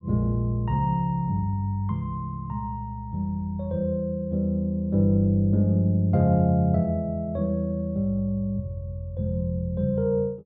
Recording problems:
none

